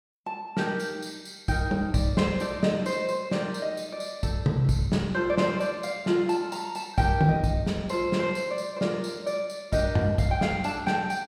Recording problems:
none

